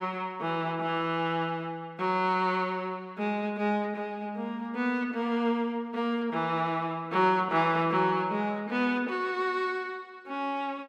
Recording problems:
none

